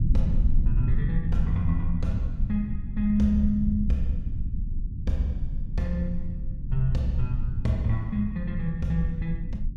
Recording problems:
low-frequency rumble; below 78 Hz, SNR 2 dB

